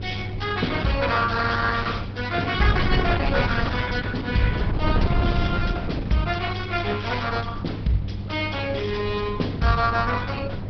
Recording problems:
treble missing; nothing above 5.3 kHz
codec artefacts; Opus, log-spectral distance 5 dB
hum; 50 Hz, harmonics up to 500 Hz, SNR 8 dB
wind noise; below 200 Hz, SNR 5 dB

